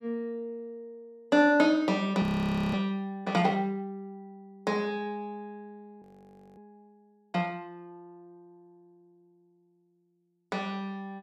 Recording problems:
frozen audio; at 2 s for 0.5 s and at 6 s for 0.5 s

